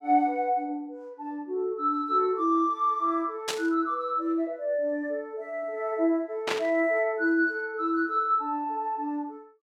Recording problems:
burst of static; at 3.5 s and at 6.5 s; peak +2 dB vs average level

